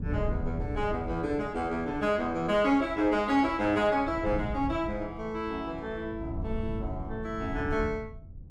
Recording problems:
wind on the microphone; below 120 Hz, SNR 10 dB

